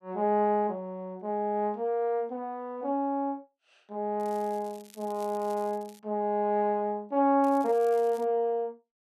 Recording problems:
crackle; from 4 to 6 s and at 7.5 s; loose cable, SNR 25 dB

